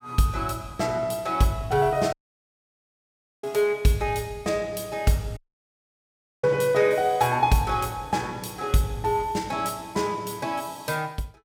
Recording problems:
audio cutting out; at 2 s for 1.5 s and at 5.5 s for 1 s

